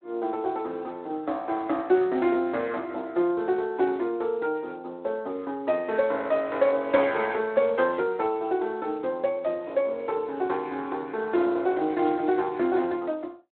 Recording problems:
telephone audio; 240 Hz to 4 kHz, Speex

